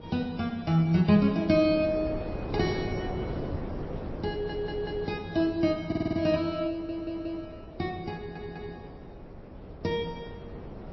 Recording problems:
codec artefacts; MP3, then MP3, log-spectral distance 2 dB, nothing above 5 kHz
wind noise; below 490 Hz, SNR 11 dB
stutter; 4 times, first at 4.5 s

